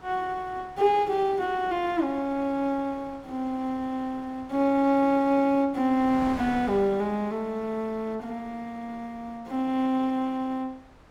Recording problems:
wind on the microphone; below 1.2 kHz, SNR 21 dB

